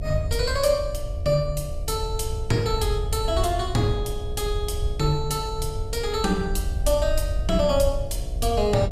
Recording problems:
electrical hum; 60 Hz, harmonics up to 720 Hz, SNR 19 dB
rumble; below 80 Hz, SNR 5 dB

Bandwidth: 15 kHz